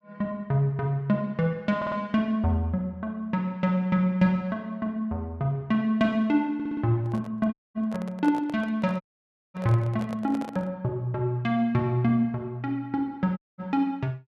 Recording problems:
audio stuttering; at 2 s and at 6.5 s
handling noise; from 7 to 11 s; peak -8 dB vs average level
audio cutting out; at 7.5 s, at 9 s for 0.5 s and at 13 s

